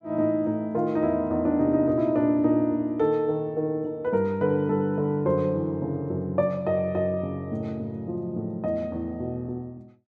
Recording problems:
none

